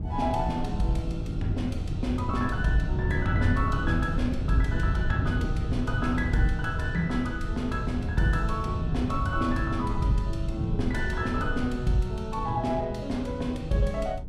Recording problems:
wind on the microphone; below 130 Hz, SNR 3 dB

